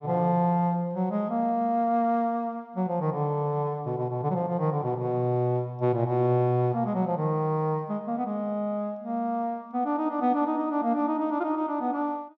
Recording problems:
none

